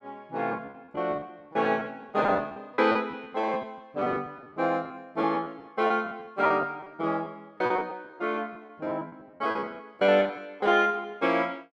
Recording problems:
lost packets; 15% of the sound replaced, filled with repeated pitch periods

